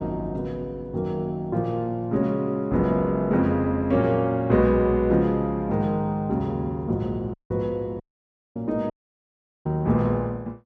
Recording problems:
audio cutting out; at 7.5 s, at 8 s for 0.5 s and at 9 s for 1 s

